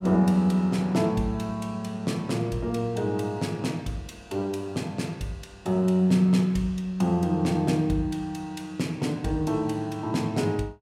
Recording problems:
none

